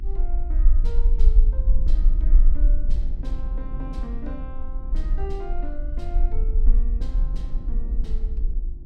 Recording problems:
hum; 50 Hz, harmonics up to 350 Hz, SNR 9 dB
rumble; below 40 Hz, strongest tone 22 Hz, SNR -15 dB
wind on the microphone; below 170 Hz, SNR 3 dB

